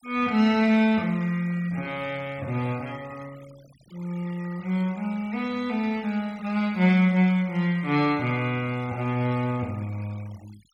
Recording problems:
noise reduction artefacts; signal-to-artefact ratio 24 dB

